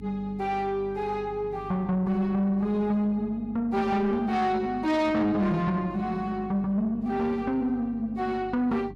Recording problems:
distortion; soft clipping, signal-to-distortion ratio 12 dB
electrical hum; 50 Hz, harmonics up to 300 Hz, SNR 19 dB

